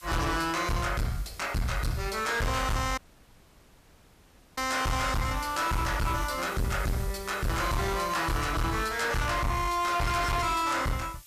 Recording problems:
distortion; hard clipping, uneven, signal-to-distortion ratio 6 dB
background hiss; slope +4 dB per octave, SNR 18 dB
dropout; at 3 s for 1.5 s

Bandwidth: 14.5 kHz